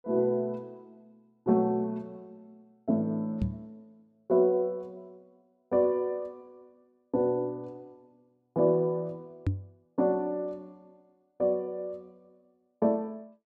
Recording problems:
microphone thump; at 3.5 s and at 9.5 s; peak +4 dB vs average level

